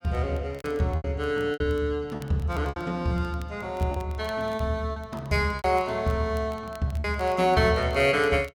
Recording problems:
crackle; vinyl, SNR 27 dB
packet loss; 8% of the sound replaced, filled with repeated pitch periods

